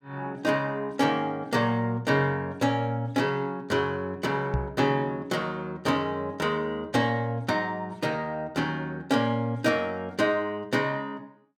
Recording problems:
microphone bump; at 4.5 s; peak +3 dB vs average level

